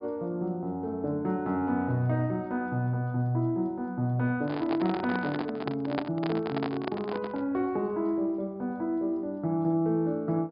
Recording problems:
treble cut off; nothing above 5 kHz
handling noise; from 4.5 to 7.5 s; peak +3 dB vs average level

